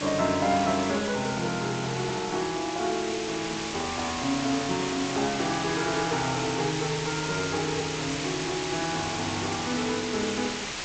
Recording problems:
codec artefacts; G.722, log-spectral distance 16 dB
background hiss; slope -1 dB per octave, SNR 4 dB

